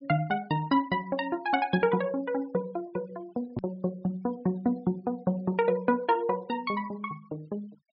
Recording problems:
low-pass filter; nothing above 5.3 kHz
noise reduction artefacts; signal-to-artefact ratio 25 dB
edit click; at 3.5 s

